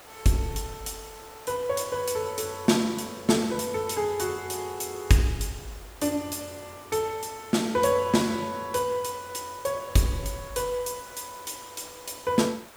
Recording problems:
background hiss; SNR 19 dB

